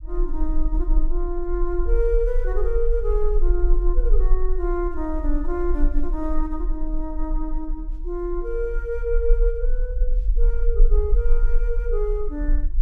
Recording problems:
rumble; below 38 Hz, strongest tone 18 Hz, SNR -3 dB

